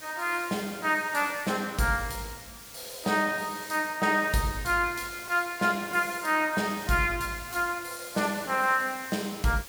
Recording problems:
background hiss; slope 0 dB per octave, SNR 15 dB

